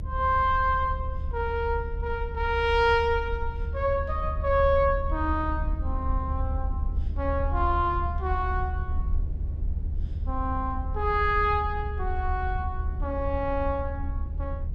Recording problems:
rumble; below 74 Hz, SNR 4 dB

